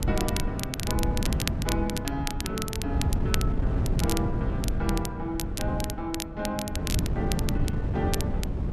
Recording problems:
wind noise; below 170 Hz, SNR -3 dB
crackling; vinyl, SNR 2 dB

